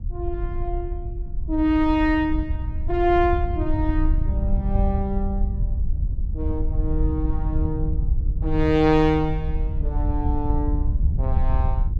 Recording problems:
wind on the microphone; below 74 Hz, SNR 2 dB

